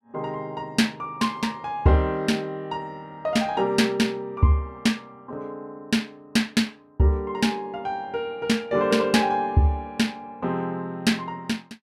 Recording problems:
none

